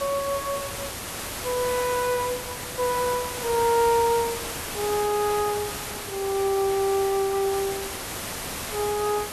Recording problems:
hiss; slope -2 dB per octave, SNR 6 dB

